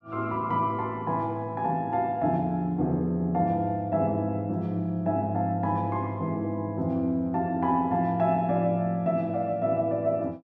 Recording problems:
none

